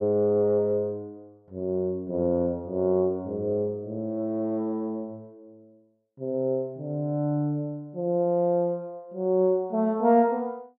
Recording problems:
none

